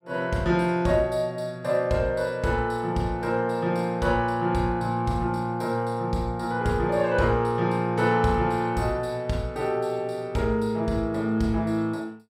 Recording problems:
none

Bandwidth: 15.5 kHz